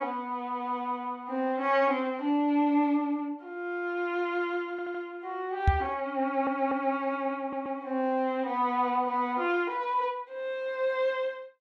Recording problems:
audio stuttering; at 4.5 s, at 6 s and at 7.5 s
knock on the microphone; at 5.5 s; peak +9 dB vs average level

